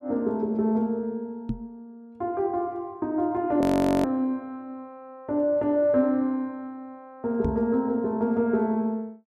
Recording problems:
knock on the microphone; at 1.5 s and at 7.5 s; peak +1 dB vs average level
audio freezing; at 3.5 s

